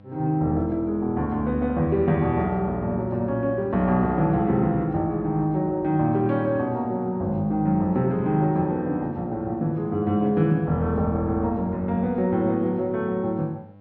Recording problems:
hum; 50 Hz, harmonics up to 1.3 kHz, SNR 24 dB

